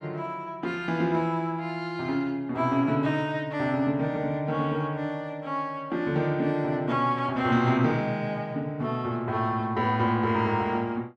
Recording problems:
none

